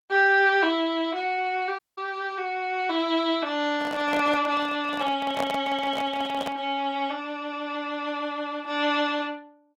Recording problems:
codec artefacts; Opus, log-spectral distance 2 dB
audio cutting out; at 2 s
handling noise; from 3.5 to 6.5 s; peak 0 dB vs average level

